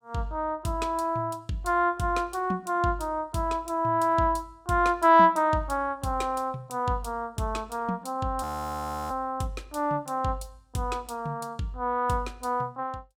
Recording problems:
frozen audio; at 8.5 s for 0.5 s

